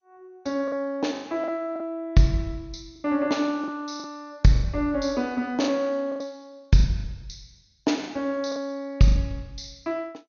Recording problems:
codec artefacts; MP2, log-spectral distance 3 dB, nothing above 6.7 kHz
packet loss; 8% of the sound replaced, filled with the last packet

